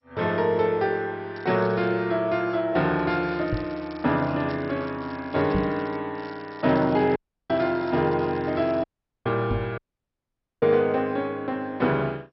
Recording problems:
codec artefacts; MP2, log-spectral distance 3 dB, nothing above 5.5 kHz
crackling; at 1.5 s, from 3 to 6 s and from 6 to 9 s; loose cable, SNR 27 dB
knock on the microphone; at 3.5 s, at 5.5 s and at 9.5 s; peak +2 dB vs average level
audio cutting out; at 7 s, at 9 s and at 10 s for 1 s

